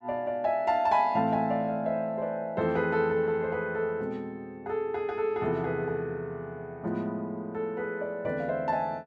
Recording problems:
none

